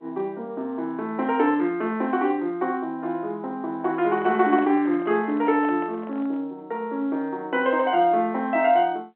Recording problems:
phone line; 190 Hz to 3.4 kHz, G.711
handling noise; from 4 to 6.5 s; peak -10 dB vs average level

